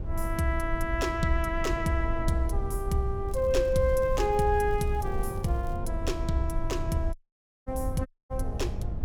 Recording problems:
low-frequency rumble; below 76 Hz, SNR 5 dB
crackling; from 3.5 to 6 s; loose cable, SNR 29 dB
dropout; at 7 s for 0.5 s and at 8 s

